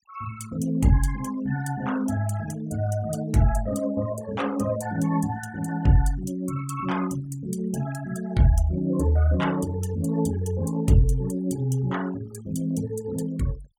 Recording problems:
denoising artefacts; signal-to-artefact ratio 21 dB

